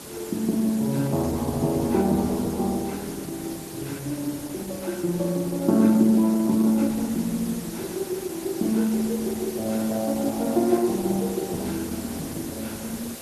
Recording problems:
codec artefacts; Opus, log-spectral distance 7 dB, nothing above 11 kHz
background hiss; SNR 13 dB

